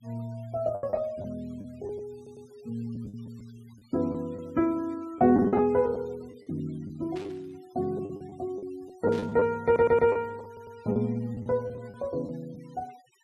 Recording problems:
denoising artefacts; signal-to-artefact ratio 27 dB
packet loss; 9% of the sound replaced, filled with the last packet
stutter; at 2 s, at 9.5 s and at 10 s
static burst; at 7 s and at 9 s; peak -12 dB vs average level

